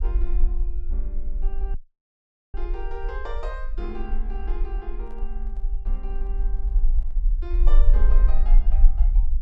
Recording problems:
low-frequency rumble; below 38 Hz, strongest tone 22 Hz, SNR -14 dB
audio cutting out; at 1.5 s for 1 s
handling noise; from 5 to 8 s; peak -10 dB vs average level

